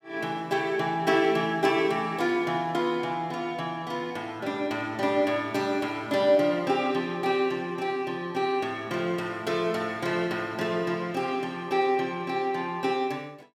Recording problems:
none

